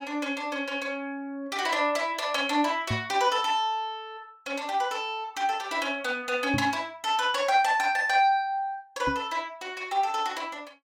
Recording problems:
microphone bump; at 3 s, at 6.5 s and at 9 s; peak 0 dB vs average level

